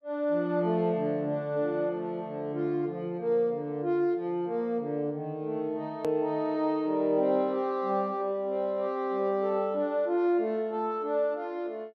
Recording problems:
click at an edit; at 6 s

